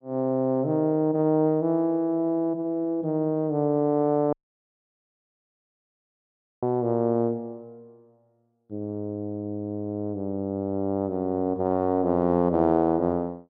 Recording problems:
dropout; at 4.5 s for 2.5 s

